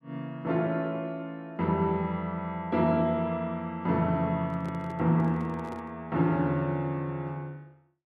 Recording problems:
handling noise; from 4.5 to 6 s; peak -10 dB vs average level

